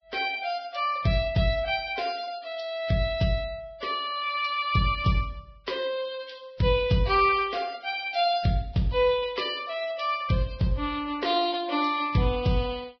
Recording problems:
codec artefacts; Vorbis, log-spectral distance 3 dB, nothing above 4.8 kHz

